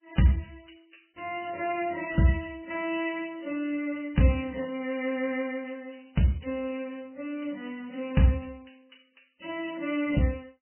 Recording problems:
codec artefacts; MP3, log-spectral distance 8 dB, nothing above 3 kHz

